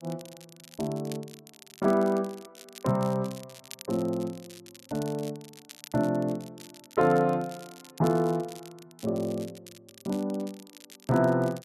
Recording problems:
crackling; vinyl, SNR 20 dB

